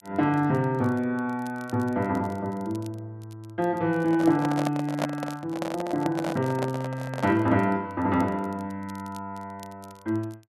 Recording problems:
crackle; vinyl, SNR 27 dB
handling noise; from 4 to 7.5 s; peak +2 dB vs average level

